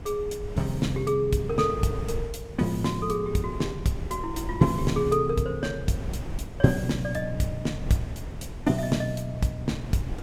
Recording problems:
wind on the microphone; below 170 Hz, SNR 10 dB

